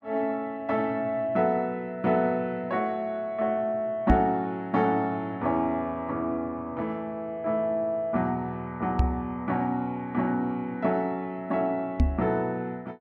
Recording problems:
knock on the microphone; at 4 s, at 9 s and at 12 s; peak +9 dB vs average level

